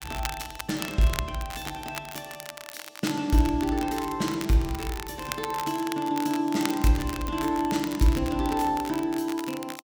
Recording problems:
crackling; vinyl, SNR 11 dB

